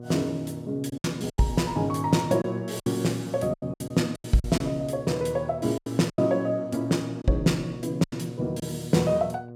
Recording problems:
hum; 60 Hz, harmonics up to 720 Hz, SNR 13 dB
packet loss; 9% of the sound replaced, filled with silence

